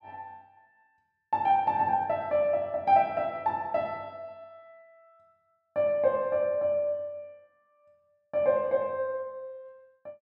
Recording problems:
none

